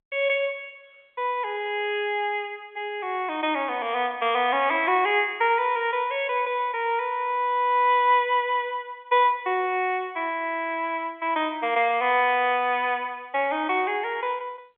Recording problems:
phone line; 260 Hz to 3.5 kHz, G.711

